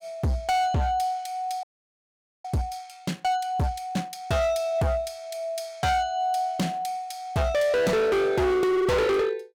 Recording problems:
distortion; hard clipping, signal-to-distortion ratio 6 dB
audio freezing; at 1.5 s for 1 s

